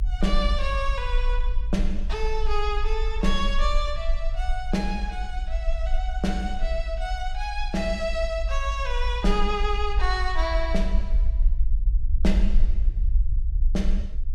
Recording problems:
low-frequency rumble; below 50 Hz, SNR -1 dB

